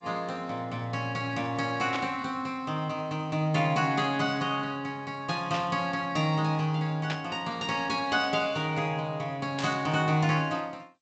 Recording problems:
lossy compression; G.722, log-spectral distance 2 dB, nothing above 7.8 kHz
static burst; 4 times, first at 2 s; peak -1 dB vs average level

